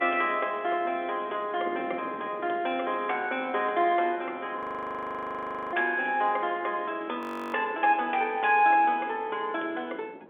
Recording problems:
telephone audio; 280 Hz to 3.5 kHz, G.711
wind on the microphone; below 540 Hz, SNR 19 dB
audio freezing; at 4.5 s for 1 s and at 7 s

